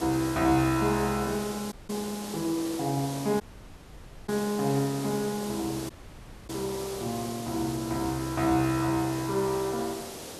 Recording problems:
background hiss; SNR 10 dB
dropout; at 1.5 s, at 3.5 s for 1 s and at 6 s for 0.5 s

